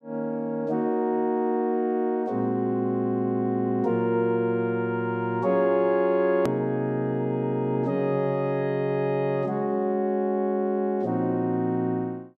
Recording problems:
edit click; at 6.5 s

